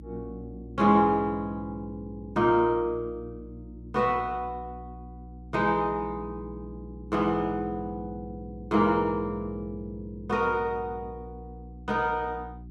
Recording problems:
hum; 60 Hz, harmonics up to 360 Hz, SNR 17 dB

